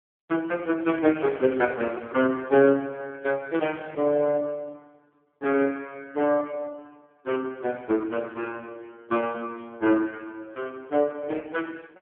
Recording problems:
phone line; 150 Hz to 3.2 kHz, AMR-NB

